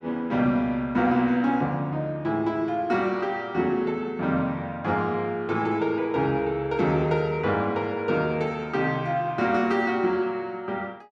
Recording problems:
none

